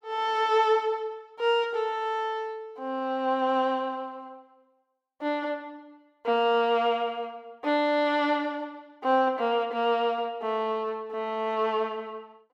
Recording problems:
none

